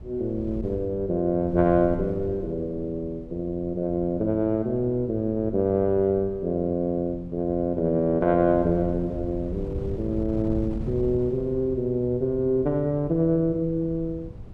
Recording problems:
wind on the microphone; below 140 Hz, SNR 14 dB

